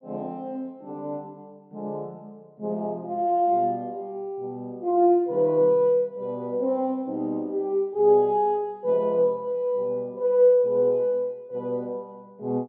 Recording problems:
none

